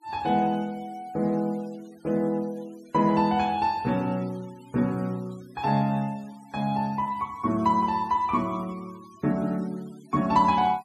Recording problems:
denoising artefacts; signal-to-artefact ratio 26 dB

